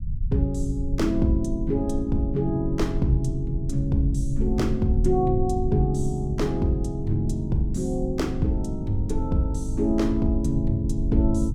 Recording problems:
rumble; below 74 Hz, SNR 6 dB

